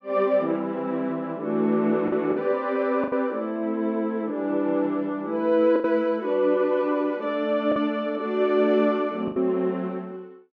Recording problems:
lost packets; 3% of the sound replaced, filled with the last packet

